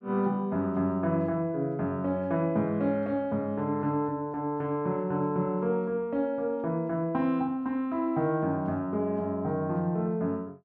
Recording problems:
none

